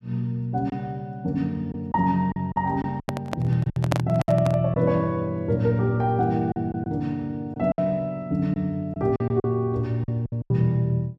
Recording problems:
lost packets; 8% of the sound replaced, filled with silence
microphone handling noise; from 3 to 4.5 s; peak +4 dB vs average level

